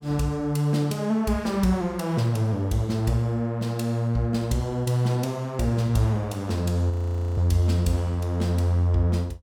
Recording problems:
frozen audio; at 7 s

